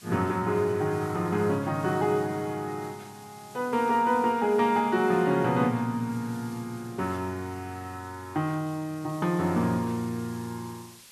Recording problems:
hiss; SNR 22 dB

